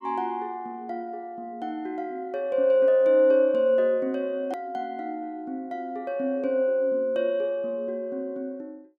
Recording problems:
hard cut with a click; at 4.5 s

